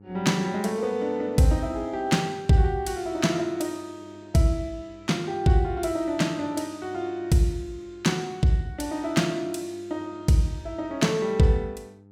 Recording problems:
electrical hum; 50 Hz, harmonics up to 900 Hz, SNR 25 dB

